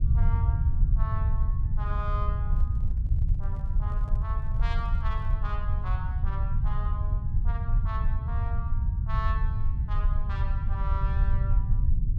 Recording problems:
rumble; below 80 Hz, SNR -12 dB
microphone handling noise; from 2.5 to 5.5 s; peak -9 dB vs average level

